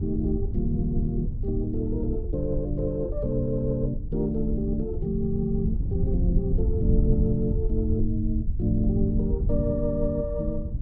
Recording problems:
low-frequency rumble; below 72 Hz, SNR 3 dB
wind on the microphone; below 150 Hz, SNR 6 dB

